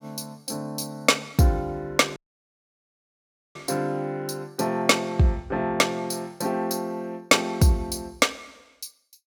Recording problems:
dropout; at 2 s for 1.5 s

